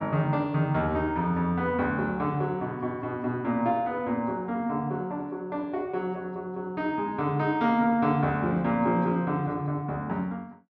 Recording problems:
none

